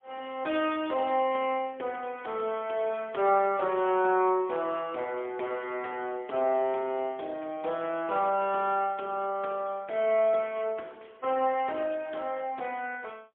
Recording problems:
phone line; 280 Hz to 3.4 kHz, AMR-NB, then MP3

